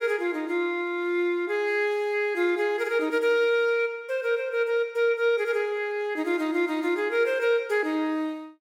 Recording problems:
none

